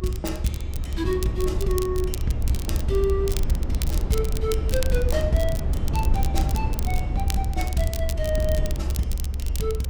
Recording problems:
rumble; below 74 Hz, SNR -1 dB
crackle; vinyl, SNR 9 dB

